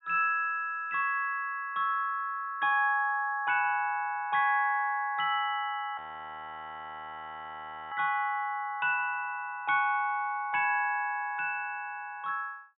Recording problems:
treble missing; nothing above 4 kHz
frozen audio; at 6 s for 2 s

